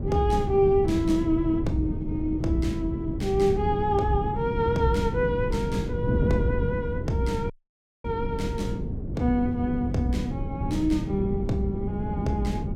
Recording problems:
wind noise; below 220 Hz, SNR 4 dB
audio cutting out; at 7.5 s for 0.5 s

